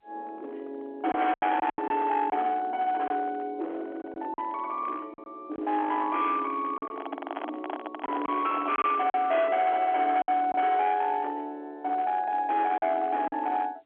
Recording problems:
telephone audio; 280 Hz to 3.4 kHz, G.711
distorted audio; hard clipping, uneven, signal-to-distortion ratio 12 dB
packet loss; 6% of the sound replaced, filled with silence
handling noise; from 7 to 9 s; peak -2 dB vs average level

